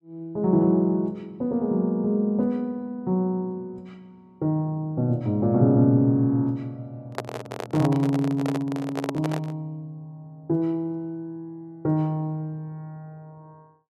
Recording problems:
handling noise; from 7 to 9.5 s; peak -1 dB vs average level

